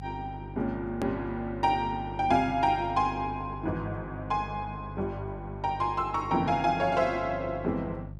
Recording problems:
hum; 50 Hz, harmonics up to 400 Hz, SNR 12 dB
edit click; at 1 s

